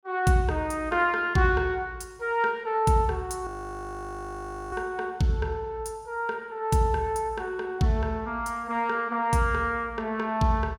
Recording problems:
frozen audio; at 3.5 s for 1 s

